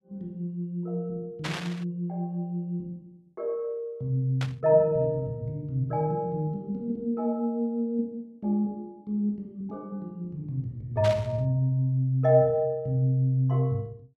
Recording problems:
static burst; at 1.5 s, at 4.5 s and at 11 s; peak -1 dB vs average level

